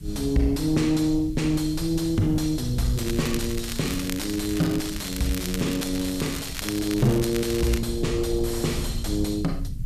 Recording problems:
distorted audio; soft clipping, signal-to-distortion ratio 10 dB
hiss; slope +3 dB per octave, SNR 28 dB
rumble; below 100 Hz, SNR 9 dB
crackle; from 3 to 8 s; loose cable, SNR 10 dB

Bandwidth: 14.5 kHz